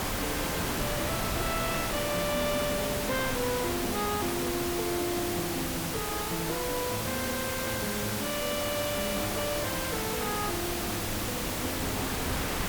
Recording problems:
distortion; soft clipping, signal-to-distortion ratio 7 dB
hiss; SNR 2 dB
wind on the microphone; below 1.7 kHz, SNR 3 dB

